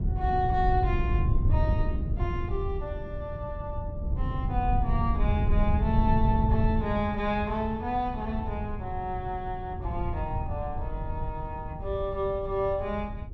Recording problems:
wind on the microphone; below 110 Hz, SNR 0 dB

